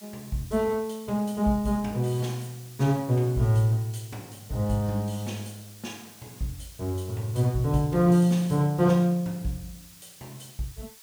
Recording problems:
hiss; slope +3 dB per octave, SNR 22 dB

